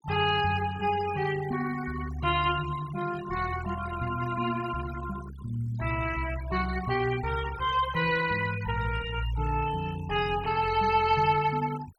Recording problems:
denoising artefacts; signal-to-artefact ratio 14 dB

